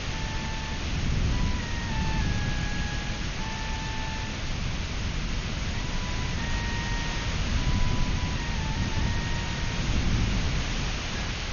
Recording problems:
lossy codec; MP2, log-spectral distance 11 dB, nothing above 6.5 kHz
hiss; slope -1 dB per octave, SNR -7 dB
wind on the microphone; below 160 Hz, SNR -9 dB

